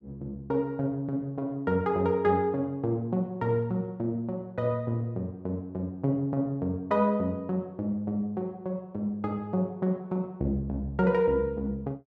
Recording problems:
none

